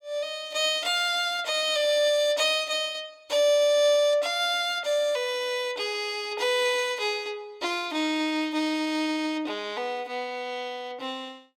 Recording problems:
none

